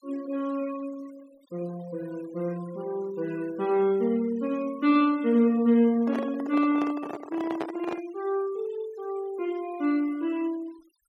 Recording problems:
noise reduction artefacts; signal-to-artefact ratio 23 dB
microphone handling noise; from 6 to 8 s; peak -2 dB vs average level

